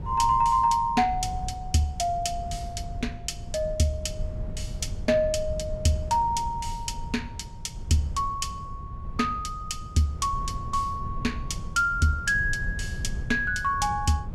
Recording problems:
wind noise; below 110 Hz, SNR 10 dB

